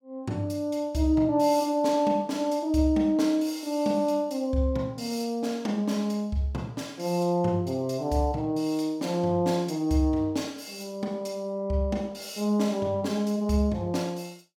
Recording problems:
none

